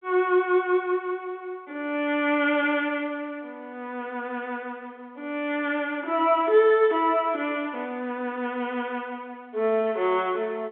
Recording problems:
telephone audio; 260 Hz to 3.6 kHz, G.711

